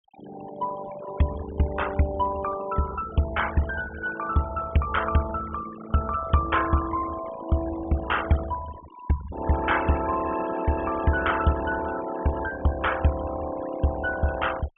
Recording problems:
treble missing; nothing above 3.4 kHz
noise reduction artefacts; signal-to-artefact ratio 13 dB

